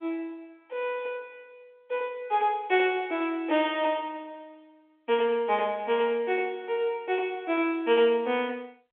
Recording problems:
phone line; 220 Hz to 3.5 kHz, G.711

